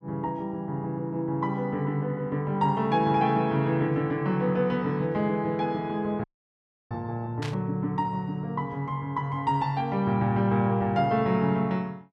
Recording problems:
dropout; at 6 s for 0.5 s
static burst; at 7.5 s; peak -7 dB vs average level

